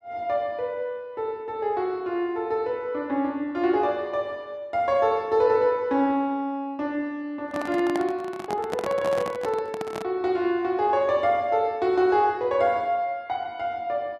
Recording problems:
microphone handling noise; from 7.5 to 10 s; peak -2 dB vs average level

